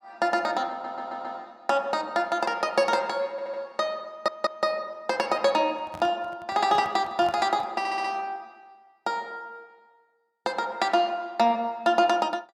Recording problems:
audio stuttering; 4 times, first at 0.5 s
microphone handling noise; from 5.5 to 7.5 s; peak -9 dB vs average level

